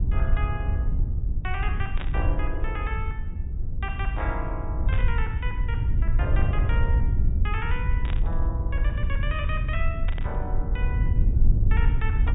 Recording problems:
low-pass filter; nothing above 4 kHz
rumble; below 78 Hz, SNR -8 dB
burst of static; 4 times, first at 2 s; peak +2 dB vs average level

